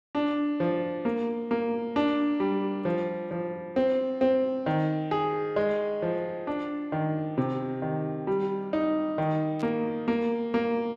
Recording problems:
static burst; at 9.5 s; peak -14 dB vs average level

